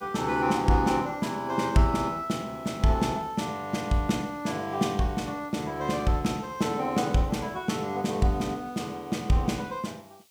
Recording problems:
background hiss; SNR 29 dB

